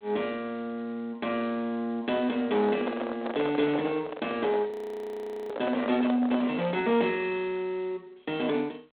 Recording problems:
telephone audio; 260 Hz to 3.7 kHz, G.726
distortion; soft clipping, signal-to-distortion ratio 11 dB
microphone handling noise; from 2.5 to 6.5 s; peak 0 dB vs average level
audio freezing; at 4.5 s for 1 s

